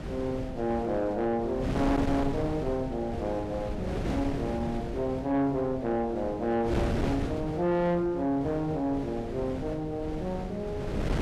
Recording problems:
distorted audio; soft clipping, signal-to-distortion ratio 11 dB
wind noise; below 430 Hz, SNR 5 dB

